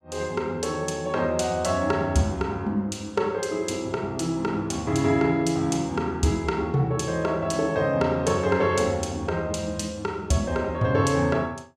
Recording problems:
none

